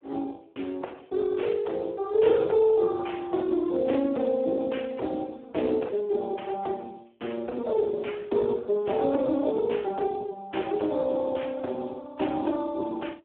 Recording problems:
telephone audio; 260 Hz to 3.3 kHz, Speex

